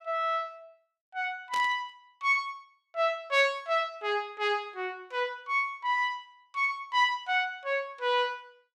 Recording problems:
burst of static; at 1.5 s; peak -7 dB vs average level

